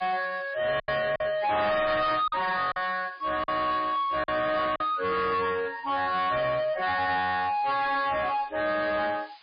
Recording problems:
lossy codec; MP3, log-spectral distance 12 dB, nothing above 4.1 kHz
distortion; soft clipping, signal-to-distortion ratio 7 dB
background hiss; SNR 27 dB
packet loss; 3% of the sound replaced, filled with silence

